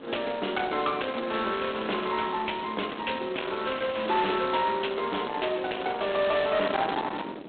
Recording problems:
telephone audio; 240 Hz to 3.9 kHz, G.726
distorted audio; soft clipping, signal-to-distortion ratio 9 dB
wind on the microphone; below 1.2 kHz, SNR 12 dB

